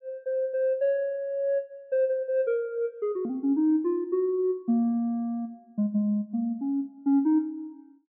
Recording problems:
none

